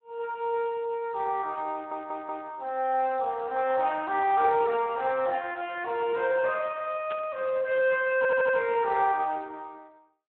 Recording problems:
telephone audio; 280 Hz to 3.6 kHz, Speex
stutter; at 1.5 s and at 8 s
burst of static; at 7 s; peak -8 dB vs average level

